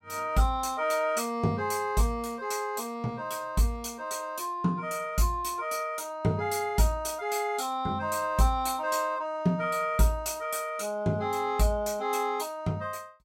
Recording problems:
none

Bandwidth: 16 kHz